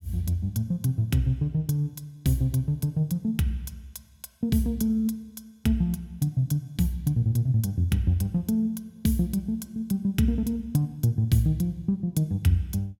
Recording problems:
none

